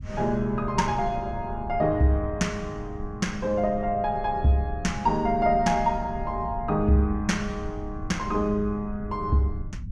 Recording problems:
rumble; below 120 Hz, SNR 12 dB

